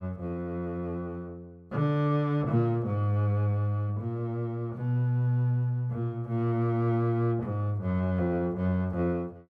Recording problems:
none

